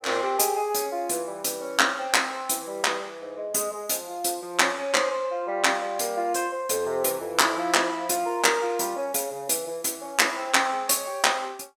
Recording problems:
none

